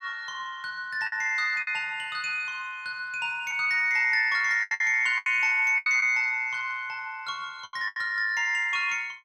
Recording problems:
lost packets; 6% of the sound replaced, filled with the last packet

